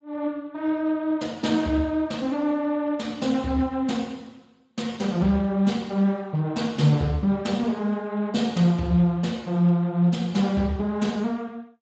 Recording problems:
lossy compression; Speex, log-spectral distance 3 dB, nothing above 7.3 kHz

